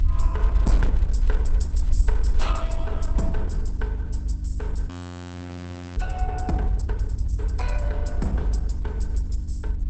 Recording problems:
lossy compression; Opus, log-spectral distance 2 dB, nothing above 8.2 kHz
hum; 50 Hz, harmonics up to 300 Hz, SNR 3 dB
rumble; below 60 Hz, SNR -8 dB
audio freezing; at 5 s for 1 s

